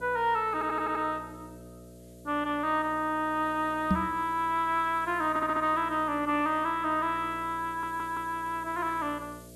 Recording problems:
hum; 60 Hz, harmonics up to 660 Hz, SNR 20 dB
hiss; slope +4 dB per octave, SNR 27 dB
stutter; at 0.5 s, at 5.5 s and at 7.5 s
microphone bump; at 4 s; peak +6 dB vs average level

